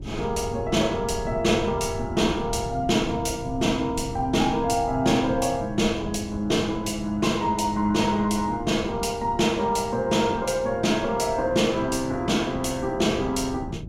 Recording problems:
wind noise; below 170 Hz, SNR 13 dB

